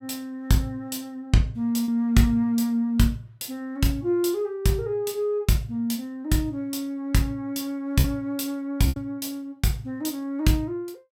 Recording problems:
lost packets; 1.5% of the sound replaced, filled with repeated pitch periods

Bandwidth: 16.5 kHz